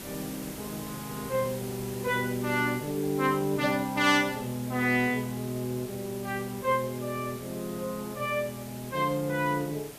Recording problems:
background hiss; slope -4 dB per octave, SNR 13 dB

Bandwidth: 14.5 kHz